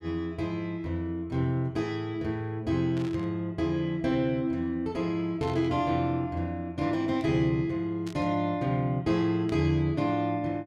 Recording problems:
static burst; 4 times, first at 3 s; peak -12 dB vs average level

